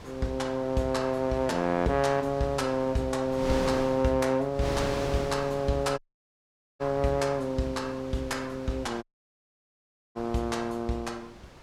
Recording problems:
wind noise; below 1.4 kHz, SNR 12 dB
audio cutting out; at 6 s for 1 s and at 9 s for 1 s

